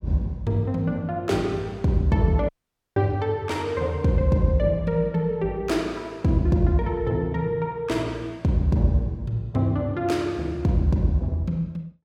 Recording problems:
audio cutting out; at 2.5 s

